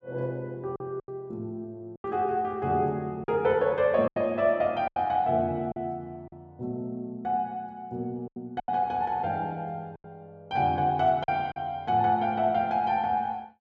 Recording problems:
packet loss; 6% of the sound replaced, filled with silence

